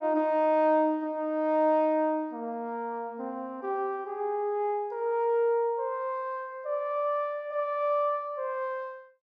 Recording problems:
none

